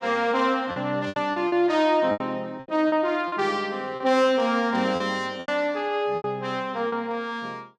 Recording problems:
lost packets; 9% of the sound replaced, filled with repeated pitch periods

